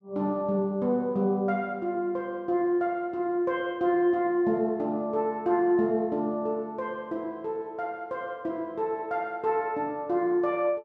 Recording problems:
none

